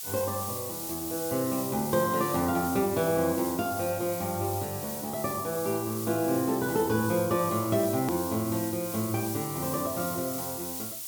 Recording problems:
hiss; SNR 6 dB
hard cut with a click; at 8 s

